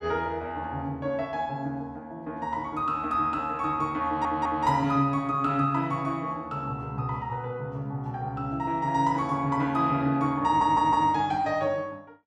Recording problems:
stutter; at 4 s and at 10 s

